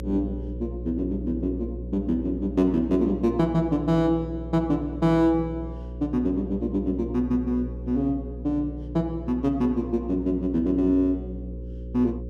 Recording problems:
hum; 60 Hz, harmonics up to 540 Hz, SNR 10 dB

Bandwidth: 13.5 kHz